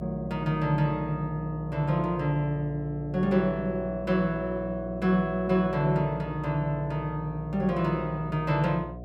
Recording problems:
hum; 60 Hz, harmonics up to 720 Hz, SNR 13 dB

